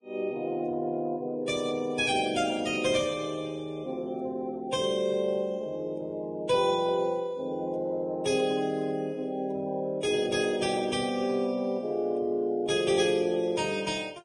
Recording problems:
codec artefacts; Vorbis, log-spectral distance 2 dB, nothing above 9.8 kHz

